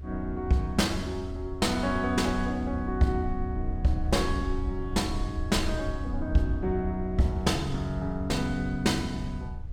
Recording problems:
rumble; below 74 Hz, SNR 7 dB
wind on the microphone; below 240 Hz, SNR 21 dB

